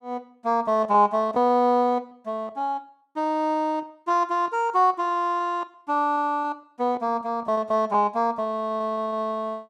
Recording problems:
packet loss; 10% of the sound replaced, filled with repeated pitch periods

